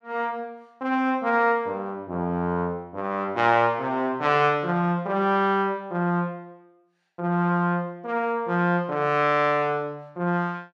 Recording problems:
none

